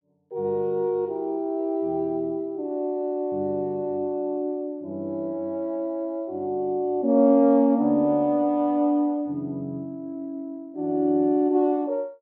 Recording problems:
none

